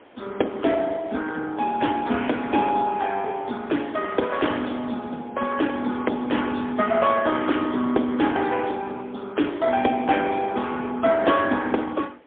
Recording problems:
telephone audio; 220 Hz to 3.4 kHz, AMR-NB, then MP3
wind on the microphone; below 1.4 kHz, SNR 23 dB

